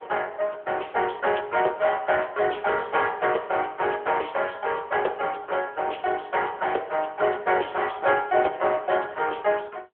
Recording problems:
telephone audio; 320 Hz to 3.3 kHz, AMR-NB

